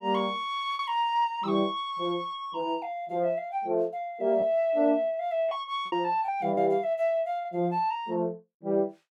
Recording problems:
packet loss; 3% of the sound replaced, filled with repeated pitch periods

